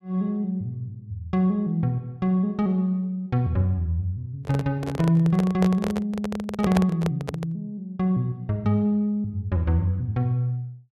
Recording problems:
handling noise; from 4.5 to 7.5 s; peak +3 dB vs average level

